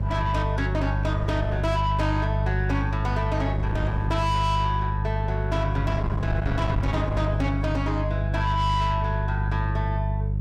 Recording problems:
distorted audio; soft clipping, signal-to-distortion ratio 8 dB
hum; 50 Hz, harmonics up to 350 Hz, SNR -1 dB
wind noise; below 360 Hz, SNR 8 dB

